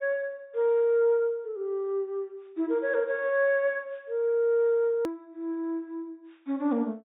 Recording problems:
treble missing; nothing above 4 kHz
edit click; at 5 s

